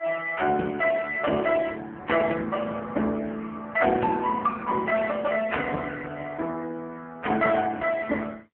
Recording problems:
phone line; 240 Hz to 3.3 kHz, AMR-NB

